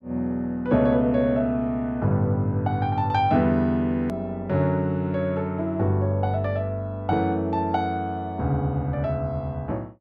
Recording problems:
hard cut with a click; at 4 s

